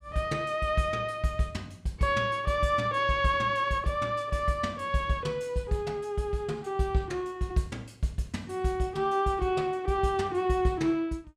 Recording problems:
none

